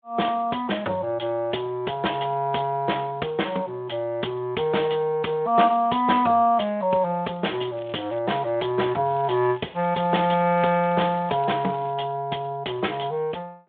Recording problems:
telephone audio; 220 Hz to 3.6 kHz, Speex
crackling; at 7.5 s and from 9 to 12 s; loose cable, SNR 24 dB

